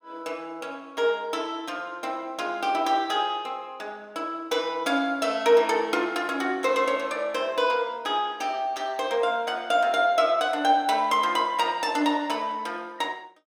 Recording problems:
none

